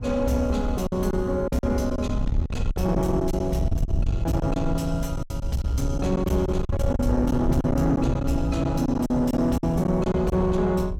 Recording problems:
distorted audio; soft clipping, signal-to-distortion ratio 11 dB
rumble; below 100 Hz, SNR 13 dB
wind noise; below 110 Hz, SNR 5 dB
packet loss; 10% of the sound replaced, filled with silence

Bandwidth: 16.5 kHz